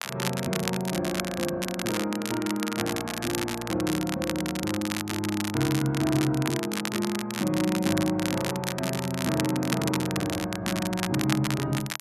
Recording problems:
crackling; vinyl, SNR 5 dB

